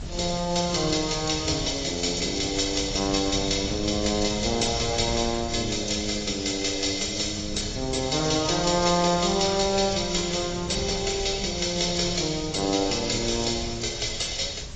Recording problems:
codec artefacts; AAC, log-spectral distance 16 dB, nothing above 7.3 kHz
hiss; slope +2 dB per octave, SNR 20 dB
wind noise; below 170 Hz, SNR 14 dB

